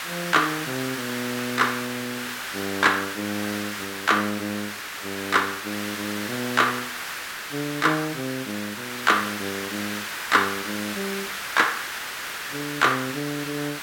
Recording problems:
background hiss; SNR 5 dB

